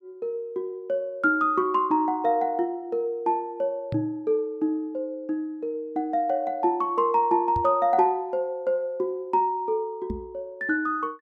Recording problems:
microphone thump; at 4 s, at 7.5 s and at 10 s; peak -3 dB vs average level

